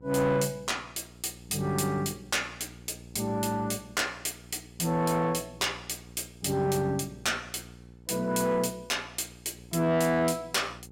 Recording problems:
distortion; soft clipping, signal-to-distortion ratio 11 dB
electrical hum; 60 Hz, harmonics up to 900 Hz, SNR 21 dB

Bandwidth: 16 kHz